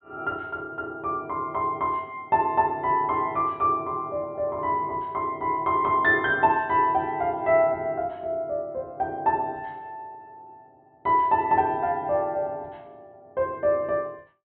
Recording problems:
treble missing; nothing above 4 kHz

